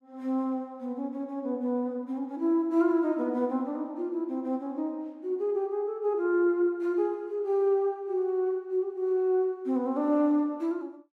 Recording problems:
none

